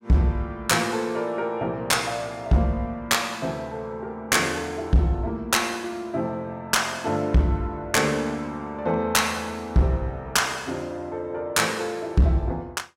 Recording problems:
distorted audio; hard clipping, uneven, signal-to-distortion ratio 10 dB

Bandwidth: 16 kHz